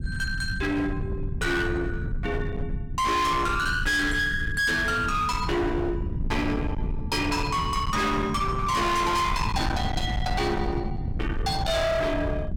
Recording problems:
distortion; hard clipping, signal-to-distortion ratio 7 dB
rumble; below 190 Hz, SNR 5 dB

